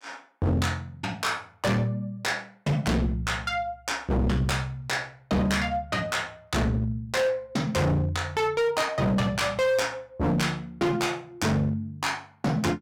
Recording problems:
distorted audio; hard clipping, signal-to-distortion ratio 7 dB

